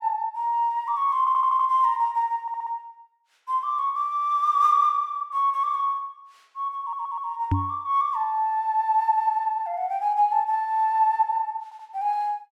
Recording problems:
stutter; 4 times, first at 1 s
microphone bump; at 7.5 s; peak +3 dB vs average level

